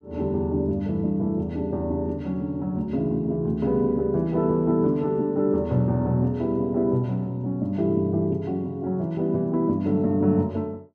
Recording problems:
none

